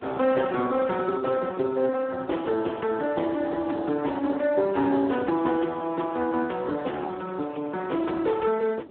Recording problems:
phone line; 260 Hz to 3.3 kHz, Speex
wind on the microphone; below 540 Hz, SNR 20 dB

